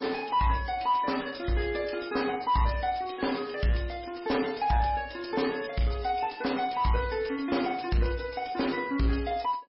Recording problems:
lossy compression; MP3, log-spectral distance 7 dB, nothing above 5.3 kHz
distorted audio; soft clipping, signal-to-distortion ratio 11 dB

